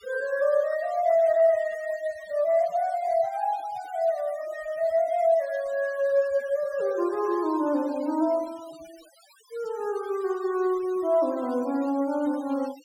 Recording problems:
denoising artefacts; signal-to-artefact ratio 23 dB

